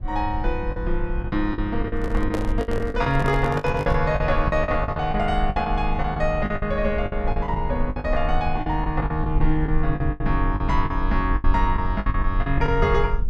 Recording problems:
rumble; below 54 Hz, strongest tone 20 Hz, SNR 4 dB
lost packets; 14% of the sound replaced, filled with the last packet
handling noise; from 2 to 4 s; peak +1 dB vs average level

